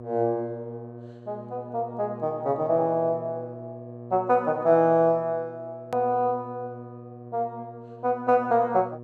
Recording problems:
electrical hum; 60 Hz, harmonics up to 1.1 kHz, SNR 17 dB
hard cut with a click; at 6 s

